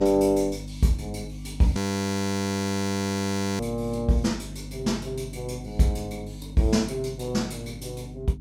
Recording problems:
hum; 50 Hz, harmonics up to 300 Hz, SNR 13 dB
audio freezing; at 2 s for 2 s

